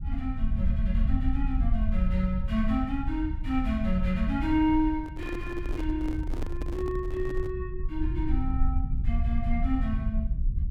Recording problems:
low-frequency rumble; below 70 Hz, SNR 0 dB
handling noise; from 5 to 7.5 s; peak -2 dB vs average level

